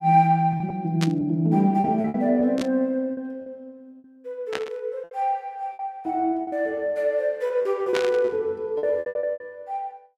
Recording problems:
packet loss; 11% of the sound replaced, filled with repeated pitch periods
burst of static; 4 times, first at 1 s; peak 0 dB vs average level

